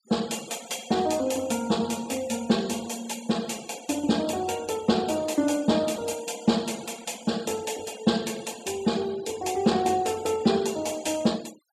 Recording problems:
denoising artefacts; signal-to-artefact ratio 19 dB

